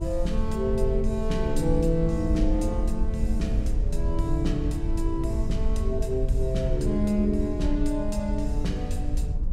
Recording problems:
hum; 60 Hz, harmonics up to 600 Hz, SNR 28 dB
rumble; below 62 Hz, SNR 1 dB

